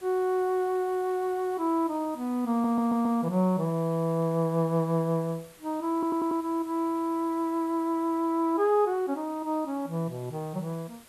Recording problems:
background hiss; slope -2 dB per octave, SNR 25 dB
audio stuttering; at 2.5 s and at 6 s

